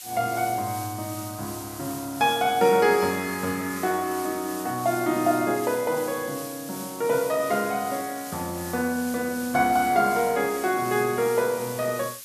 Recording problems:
hiss; SNR 12 dB

